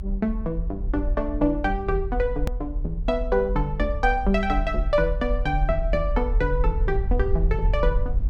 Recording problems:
low-frequency rumble; below 52 Hz, strongest tone 38 Hz, SNR 2 dB
click at an edit; at 2.5 s

